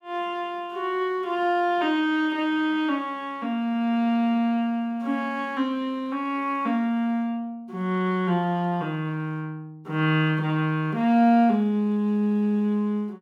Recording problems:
none

